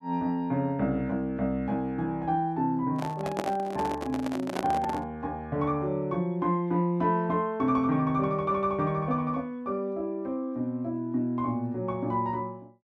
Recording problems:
microphone handling noise; from 3 to 5 s; peak +2 dB vs average level

